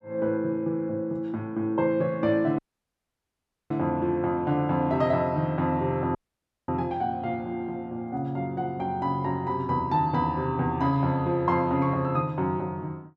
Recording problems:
dropout; at 2.5 s for 1 s and at 6 s for 0.5 s

